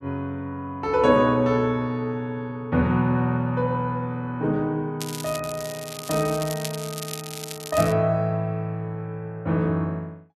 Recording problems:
crackling; from 5 to 8 s; loose cable, SNR 10 dB

